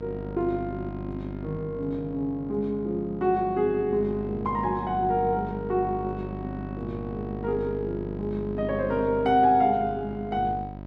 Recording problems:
electrical hum; 50 Hz, harmonics up to 1.3 kHz, SNR 10 dB

